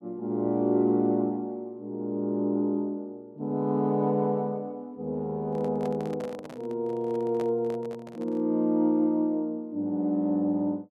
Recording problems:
handling noise; from 5.5 to 8.5 s; peak -8 dB vs average level

